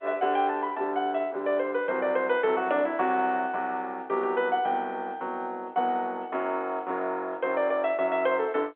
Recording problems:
telephone audio; 280 Hz to 3.5 kHz, G.711

